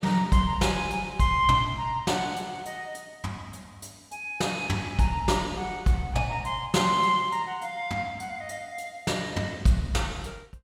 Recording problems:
none

